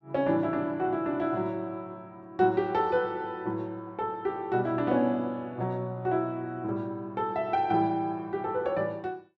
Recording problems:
none

